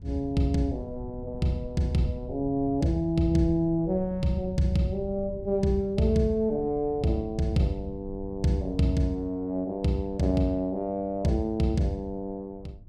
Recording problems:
wind noise; below 120 Hz, SNR 16 dB

